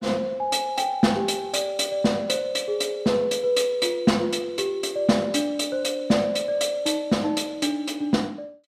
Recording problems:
none

